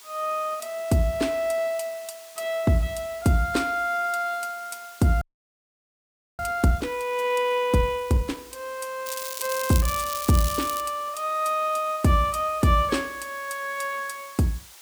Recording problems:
background hiss; slope +2 dB per octave, SNR 20 dB
audio freezing; at 5 s for 1 s
crackling; from 9 to 11 s; loose cable, SNR 7 dB

